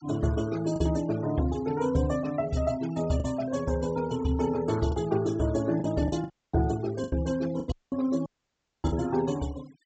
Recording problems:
low-pass filter; nothing above 8 kHz
noise reduction artefacts; signal-to-artefact ratio 20 dB
lost packets; 5% of the sound replaced, filled with the last packet
dropout; at 6.5 s, at 7.5 s and at 8.5 s for 0.5 s

